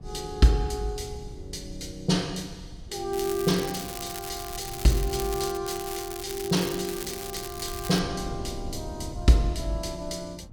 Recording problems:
wind on the microphone; below 120 Hz, SNR 15 dB
crackling; from 3 to 5.5 s and from 5.5 to 8 s; loose cable, SNR 9 dB

